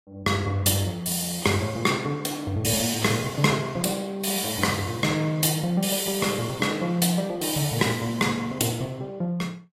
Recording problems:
codec artefacts; AAC, log-spectral distance 4 dB, nothing above 14.7 kHz

